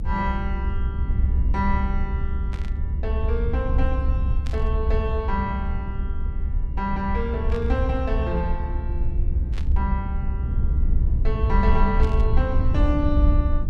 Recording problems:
low-frequency rumble; below 68 Hz, SNR -4 dB
burst of static; 5 times, first at 2.5 s; peak -7 dB vs average level

